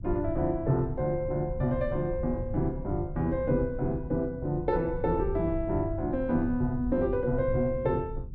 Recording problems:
low-frequency rumble; below 96 Hz, SNR 10 dB

